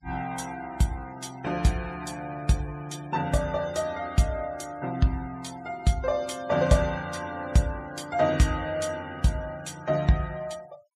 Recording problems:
noise reduction artefacts; signal-to-artefact ratio 22 dB

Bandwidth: 14.5 kHz